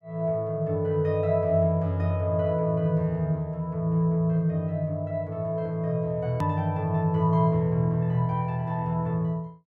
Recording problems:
click at an edit; at 6.5 s

